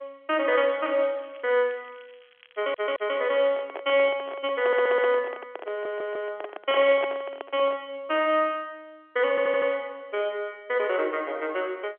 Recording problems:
telephone audio; 260 Hz to 3.4 kHz, G.711
crackling; at 0.5 s and from 1 to 3.5 s; loose cable, SNR 30 dB
stutter; 4 times, first at 2.5 s
microphone handling noise; from 3.5 to 8 s; peak -2 dB vs average level

